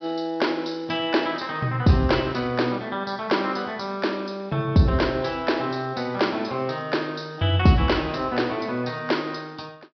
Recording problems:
treble cut off; nothing above 5.5 kHz

